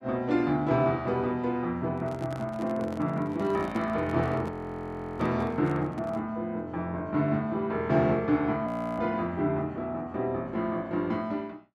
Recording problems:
microphone handling noise; from 2 to 6 s; peak -8 dB vs average level
audio freezing; at 4.5 s for 0.5 s and at 8.5 s

